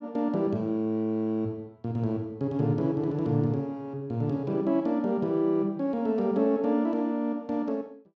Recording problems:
none

